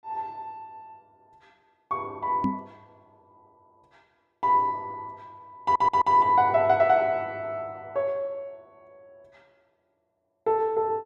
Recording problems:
microphone thump; at 2.5 s; peak +2 dB vs average level
stutter; at 5.5 s

